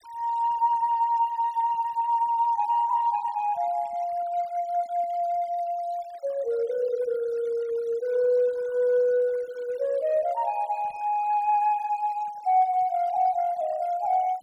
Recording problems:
denoising artefacts; signal-to-artefact ratio 27 dB

